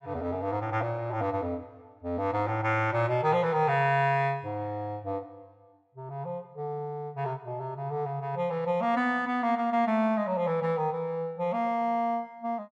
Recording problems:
none

